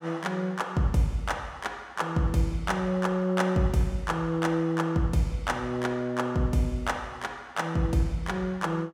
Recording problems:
none

